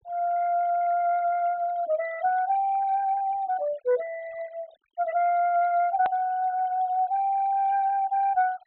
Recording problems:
treble cut off; nothing above 4 kHz
denoising artefacts; signal-to-artefact ratio 22 dB
edit click; at 6 s

